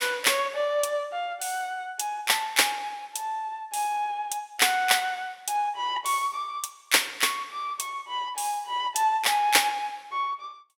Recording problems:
none

